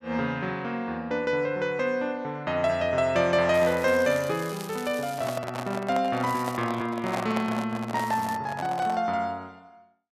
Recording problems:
crackling; from 3.5 to 5.5 s, at 6.5 s and at 8 s; loose cable, SNR 17 dB
microphone handling noise; from 5 to 9 s; peak 0 dB vs average level

